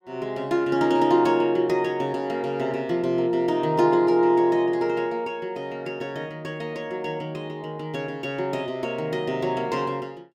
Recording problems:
none

